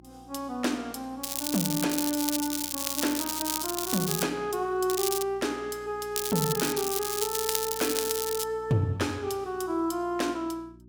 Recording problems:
hum; 60 Hz, harmonics up to 360 Hz, SNR 22 dB
crackling; from 1 to 4 s, at 5 s and from 6 to 8.5 s; loose cable, SNR 1 dB

